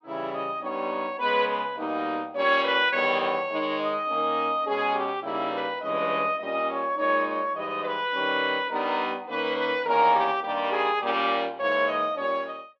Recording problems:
none

